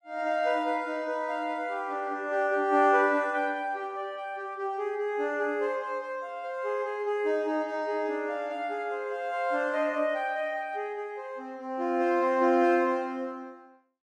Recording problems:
none

